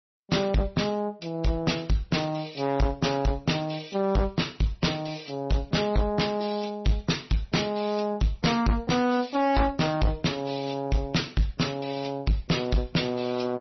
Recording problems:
codec artefacts; MP3, then MP3, log-spectral distance 6 dB, nothing above 5.8 kHz
distorted audio; hard clipping, uneven, signal-to-distortion ratio 8 dB

